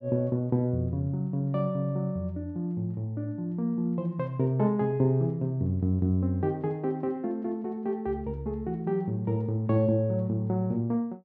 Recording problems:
none

